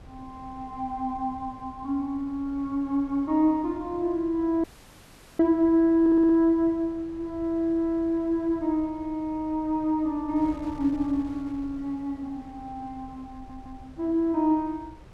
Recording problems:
wind noise; below 230 Hz, SNR 22 dB
audio cutting out; at 4.5 s for 1 s
audio stuttering; at 6 s and at 13 s

